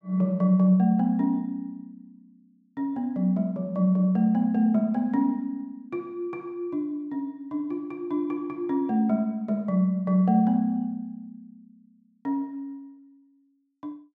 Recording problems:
none

